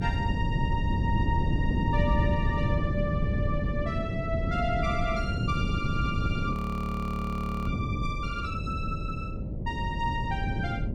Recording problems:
electrical hum; 60 Hz, harmonics up to 600 Hz, SNR 13 dB
wind on the microphone; below 190 Hz, SNR -3 dB
frozen audio; at 6.5 s for 1 s

